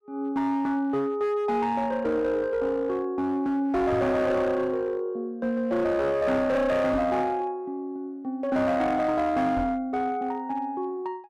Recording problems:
distorted audio; hard clipping, uneven, signal-to-distortion ratio 11 dB
microphone bump; at 4 s, at 7 s and at 9.5 s; peak -1 dB vs average level

